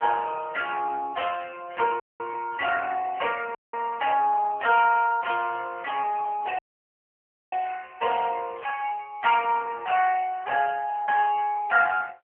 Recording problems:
phone line; 320 Hz to 3.1 kHz, AMR-NB
dropout; at 2 s, at 3.5 s and at 6.5 s for 1 s

